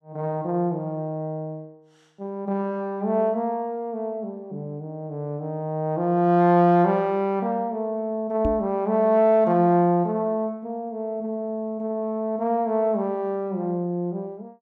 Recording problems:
microphone bump; at 8.5 s; peak 0 dB vs average level

